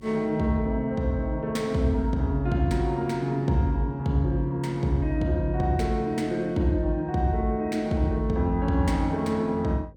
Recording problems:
electrical hum; 50 Hz, harmonics up to 550 Hz, SNR 24 dB

